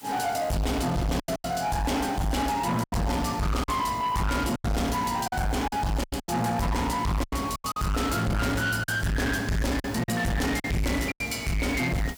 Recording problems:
distorted audio; soft clipping, signal-to-distortion ratio 6 dB
hiss; slope +1 dB per octave, SNR 22 dB
lost packets; 9% of the sound replaced, filled with silence

